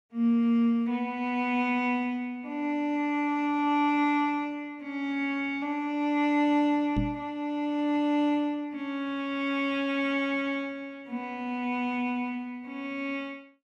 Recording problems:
microphone bump; at 7 s; peak +3 dB vs average level

